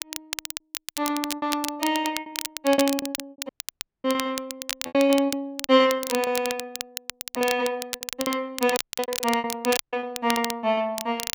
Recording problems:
crackle; vinyl, SNR 7 dB
lost packets; 17% of the sound replaced, filled with repeated pitch periods
audio cutting out; at 3.5 s for 0.5 s, at 9 s and at 10 s

